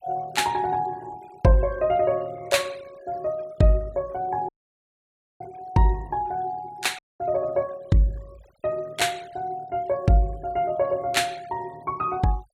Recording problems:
noise reduction artefacts; signal-to-artefact ratio 25 dB
dropout; at 4.5 s for 1 s and at 7 s

